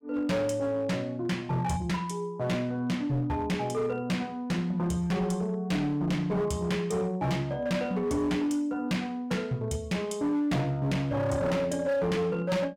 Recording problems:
distorted audio; hard clipping, signal-to-distortion ratio 10 dB

